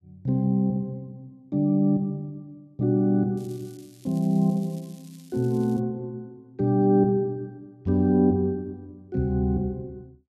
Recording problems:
crackling; from 3.5 to 6 s; loose cable, SNR 28 dB

